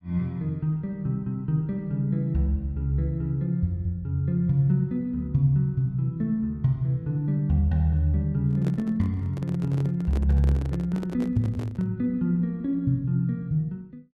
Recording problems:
microphone handling noise; from 8.5 to 12 s; peak -6 dB vs average level

